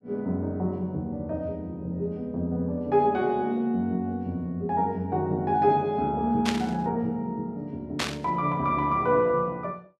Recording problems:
static burst; at 6.5 s and at 8 s; peak +3 dB vs average level

